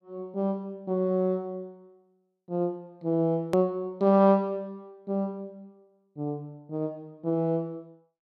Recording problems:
click at an edit; at 3.5 s

